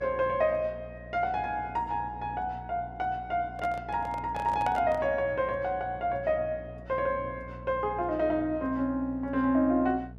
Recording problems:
hum; 60 Hz, harmonics up to 660 Hz, SNR 16 dB
handling noise; from 3.5 to 5 s; peak -4 dB vs average level

